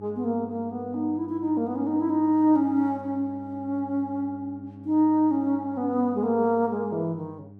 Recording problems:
electrical hum; 50 Hz, harmonics up to 800 Hz, SNR 19 dB

